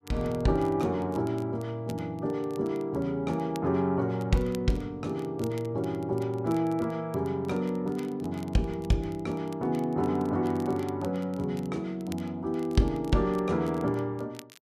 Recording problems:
crackle; vinyl, SNR 25 dB

